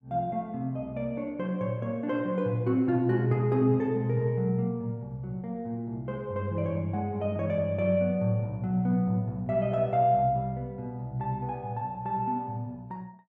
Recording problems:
none

